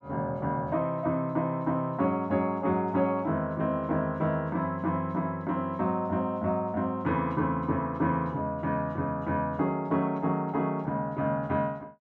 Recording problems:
none

